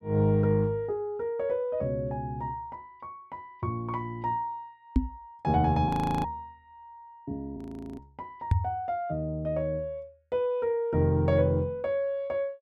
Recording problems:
microphone thump; at 5 s and at 8.5 s; peak +8 dB vs average level
audio freezing; at 6 s and at 7.5 s

